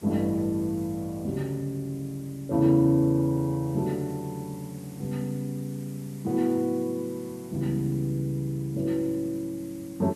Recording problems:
hiss; slope -2 dB per octave, SNR 23 dB

